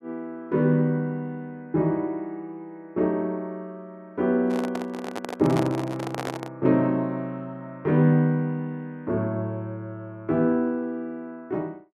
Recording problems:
microphone handling noise; from 4.5 to 6.5 s; peak 0 dB vs average level

